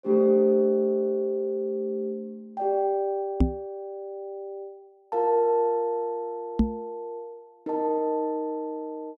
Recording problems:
microphone bump; at 3.5 s and at 6.5 s; peak +9 dB vs average level

